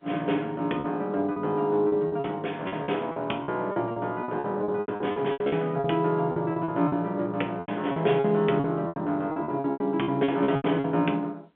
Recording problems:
telephone audio; 220 Hz to 3.4 kHz, G.711
packet loss; 15% of the sound replaced, filled with repeated pitch periods

